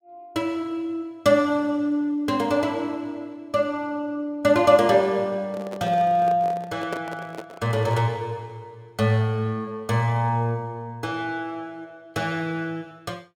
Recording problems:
handling noise; from 5.5 to 8 s; peak -2 dB vs average level

